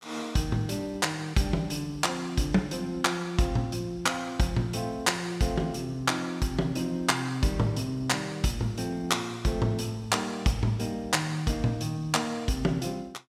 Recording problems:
none

